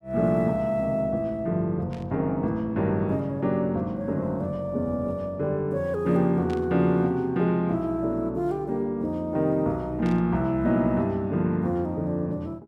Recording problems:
static burst; at 2 s, at 6.5 s and at 10 s; peak -14 dB vs average level

